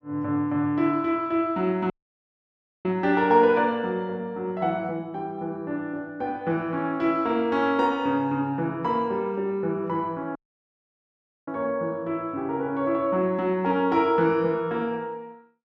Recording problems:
audio cutting out; at 2 s for 1 s and at 10 s for 1 s

